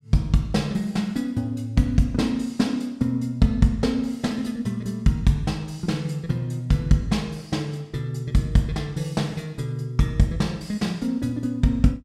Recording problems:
none

